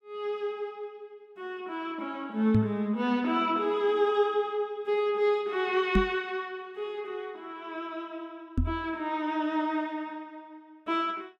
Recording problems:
microphone thump; at 2.5 s, at 6 s and at 8.5 s; peak +8 dB vs average level

